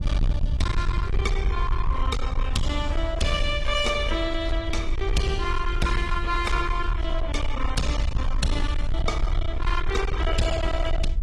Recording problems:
codec artefacts; AAC, log-spectral distance 2 dB, nothing above 11.6 kHz
distorted audio; hard clipping, signal-to-distortion ratio 7 dB
low-frequency rumble; below 64 Hz, SNR 1 dB

